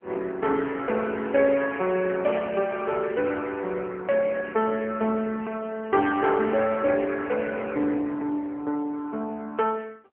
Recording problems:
phone line; 240 Hz to 3.1 kHz, AMR-NB

